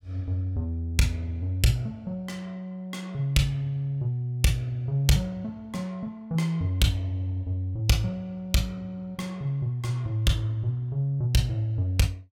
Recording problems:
none

